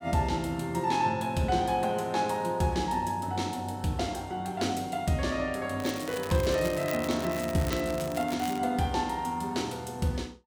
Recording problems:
crackle; from 6 to 8.5 s; loose cable, SNR 13 dB

